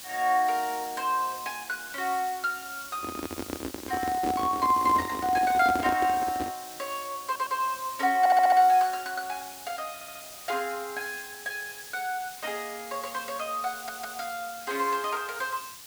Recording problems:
hiss; slope +2 dB per octave, SNR 13 dB
handling noise; from 3 to 6.5 s; peak -1 dB vs average level
stutter; 4 times, first at 7.5 s

